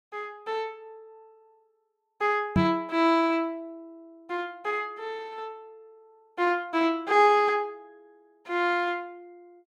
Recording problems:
knock on the microphone; at 2.5 s; peak +5 dB vs average level

